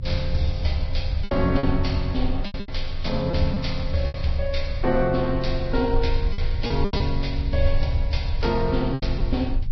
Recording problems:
lossy codec; Vorbis, log-spectral distance 3 dB, nothing above 5.3 kHz
low-frequency rumble; below 64 Hz, strongest tone 20 Hz, SNR 4 dB
lost packets; 7% of the sound replaced, filled with repeated pitch periods

